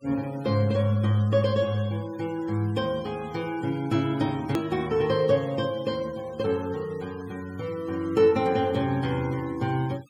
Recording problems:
noise reduction artefacts; signal-to-artefact ratio 23 dB
edit click; at 4.5 s

